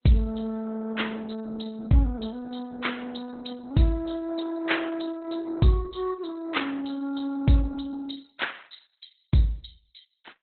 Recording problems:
lossy compression; AAC, then Opus, log-spectral distance 6 dB, nothing above 4.1 kHz

